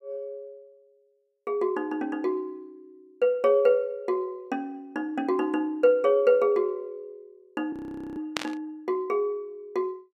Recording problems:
frozen audio; at 7.5 s
burst of static; at 8.5 s; peak +2 dB vs average level

